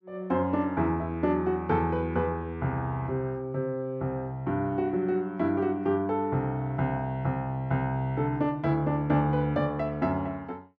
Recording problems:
none

